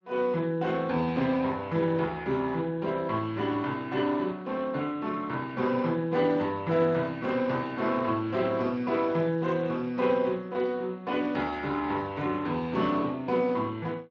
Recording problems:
codec artefacts; Speex, log-spectral distance 3 dB

